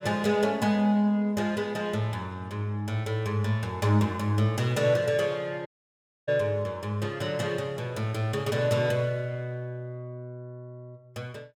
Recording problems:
audio cutting out; at 5.5 s for 0.5 s

